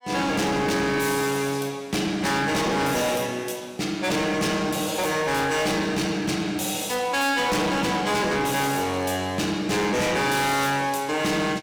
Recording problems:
distortion; hard clipping, uneven, signal-to-distortion ratio 7 dB

